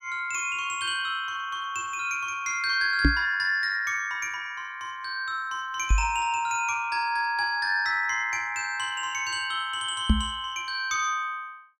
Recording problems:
microphone bump; at 3 s, at 6 s and at 10 s; peak +9 dB vs average level

